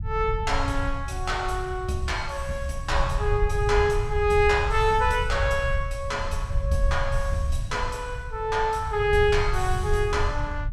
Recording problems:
low-frequency rumble; below 82 Hz, SNR 5 dB

